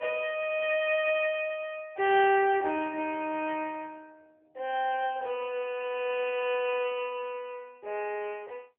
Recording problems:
telephone audio; 320 Hz to 3.2 kHz, AMR-NB

